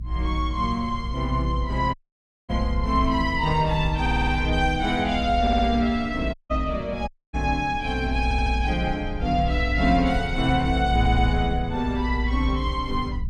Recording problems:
low-frequency rumble; below 64 Hz, strongest tone 58 Hz, SNR 4 dB
audio cutting out; at 2 s for 0.5 s, at 6.5 s and at 7 s
stutter; 4 times, first at 4 s

